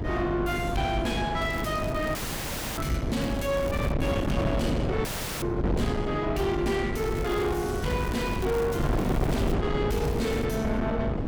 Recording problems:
distortion; soft clipping, signal-to-distortion ratio 5 dB
hum; 50 Hz, harmonics up to 400 Hz, SNR 9 dB
wind on the microphone; below 460 Hz, SNR 2 dB
crackle; 4 times, first at 1.5 s; loose cable, SNR 18 dB
dropout; at 2 s for 0.5 s and at 5 s

